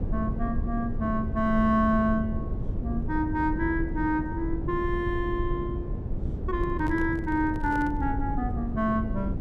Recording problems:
rumble; below 150 Hz, SNR 5 dB
microphone handling noise; from 6.5 to 8 s; peak -8 dB vs average level

